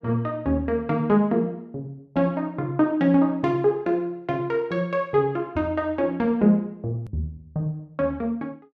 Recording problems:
edit click; at 7 s

